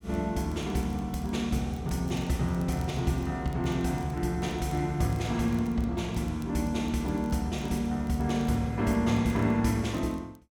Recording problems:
crackling; vinyl, SNR 28 dB

